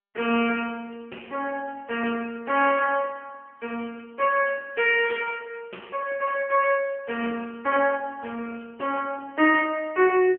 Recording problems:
phone line; 280 Hz to 2.7 kHz, AMR-NB

